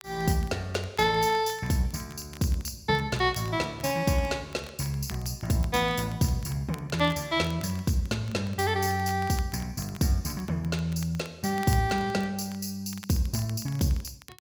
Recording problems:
crackle; vinyl, SNR 22 dB

